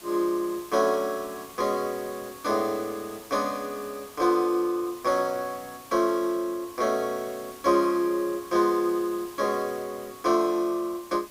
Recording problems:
hiss; slope -2 dB per octave, SNR 19 dB

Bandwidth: 15.5 kHz